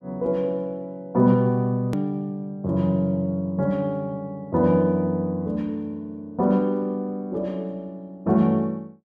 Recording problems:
hard cut with a click; at 2 s

